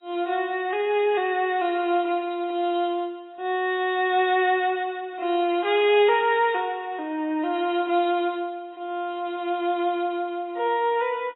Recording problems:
lossy compression; AAC, log-spectral distance 2 dB, nothing above 3.7 kHz

